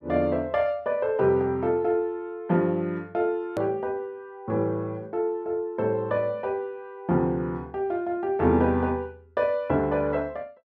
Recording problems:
edit click; at 3.5 s

